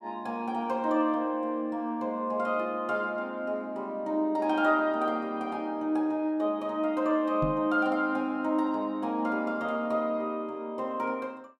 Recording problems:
microphone bump; at 7.5 s; peak +1 dB vs average level

